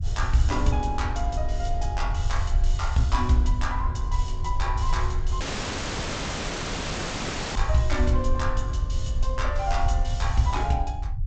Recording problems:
lossy compression; G.722, log-spectral distance 4 dB, nothing above 7.6 kHz
rumble; below 72 Hz, SNR 0 dB
dropout; at 5.5 s for 2 s

